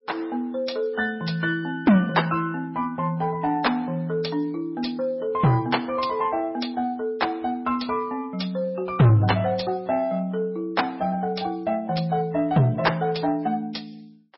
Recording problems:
lossy codec; MP3, log-spectral distance 3 dB, nothing above 5.5 kHz
distorted audio; soft clipping, signal-to-distortion ratio 8 dB

